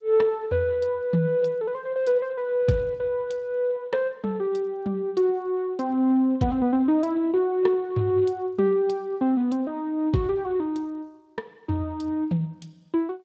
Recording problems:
lossy codec; G.722, then Speex, log-spectral distance 2 dB

